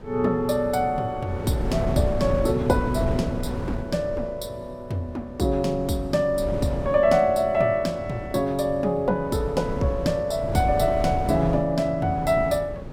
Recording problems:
wind noise; below 310 Hz, SNR 8 dB

